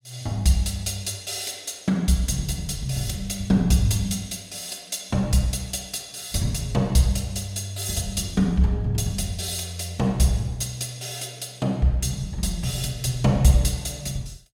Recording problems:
none

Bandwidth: 16.5 kHz